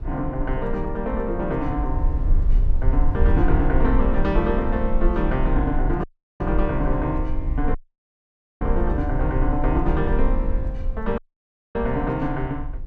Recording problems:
rumble; below 54 Hz, strongest tone 20 Hz, SNR 1 dB
dropout; at 6 s, at 8 s for 1 s and at 11 s for 0.5 s

